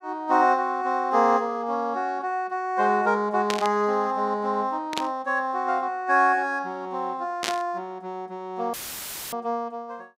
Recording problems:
static burst; at 3.5 s, at 5 s and at 7.5 s; peak +2 dB vs average level
audio cutting out; at 8.5 s for 0.5 s; filled with static

